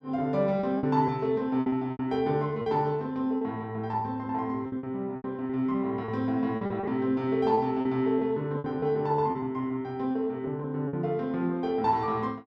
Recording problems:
lost packets; 10% of the sound replaced, filled with repeated pitch periods

